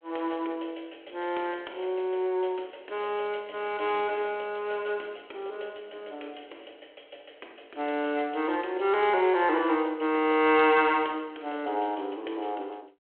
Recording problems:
telephone audio; 260 Hz to 3.3 kHz, G.726

